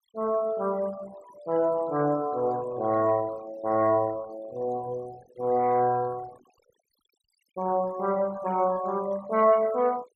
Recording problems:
denoising artefacts; signal-to-artefact ratio 21 dB

